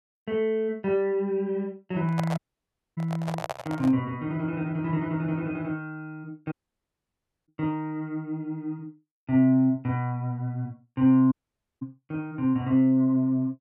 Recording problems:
handling noise; from 2 to 4 s; peak -1 dB vs average level
dropout; at 2.5 s for 0.5 s, at 6.5 s for 1 s and at 11 s

